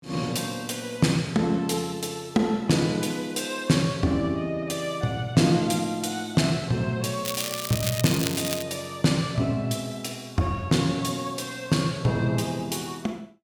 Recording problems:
crackling; from 7.5 to 8.5 s; loose cable, SNR 5 dB

